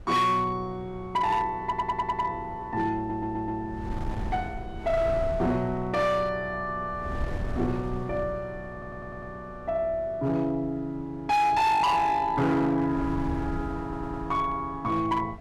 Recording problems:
distorted audio; hard clipping, signal-to-distortion ratio 10 dB
wind noise; below 140 Hz, SNR 13 dB
audio stuttering; 4 times, first at 1.5 s

